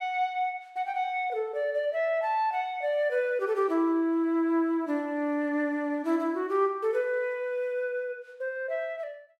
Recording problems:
none

